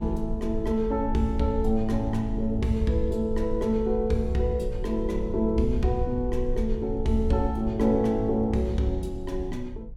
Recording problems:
rumble; below 62 Hz, SNR 9 dB

